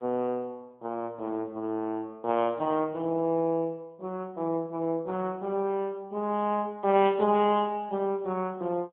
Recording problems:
telephone audio; 130 Hz to 3.5 kHz, AMR-NB

